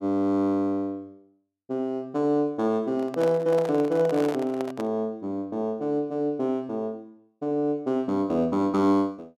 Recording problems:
microphone handling noise; from 3 to 5 s; peak -5 dB vs average level

